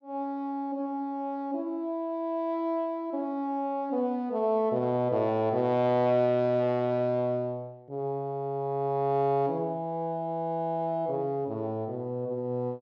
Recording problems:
none

